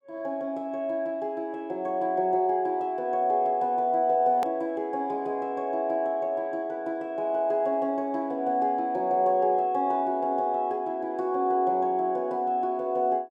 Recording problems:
hard cut with a click; at 4.5 s

